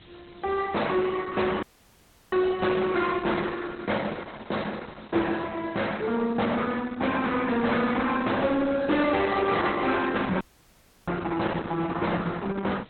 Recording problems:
lossy compression; Opus, log-spectral distance 8 dB, nothing above 4 kHz
distortion; soft clipping, signal-to-distortion ratio 12 dB
hiss; SNR 27 dB
dropout; at 1.5 s for 0.5 s and at 10 s for 0.5 s

